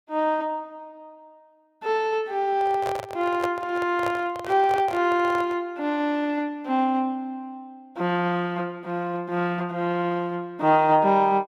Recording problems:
handling noise; from 2.5 to 5.5 s; peak -2 dB vs average level

